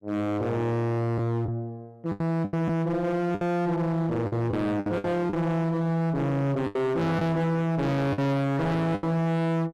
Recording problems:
distorted audio; hard clipping, signal-to-distortion ratio 6 dB
lost packets; 7% of the sound replaced, filled with the last packet

